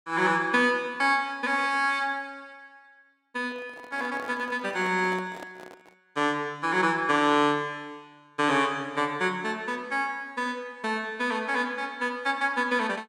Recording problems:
handling noise; from 3.5 to 6 s; peak -11 dB vs average level

